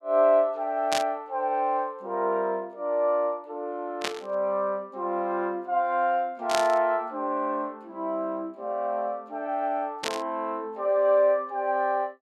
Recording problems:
burst of static; 4 times, first at 1 s; peak +2 dB vs average level

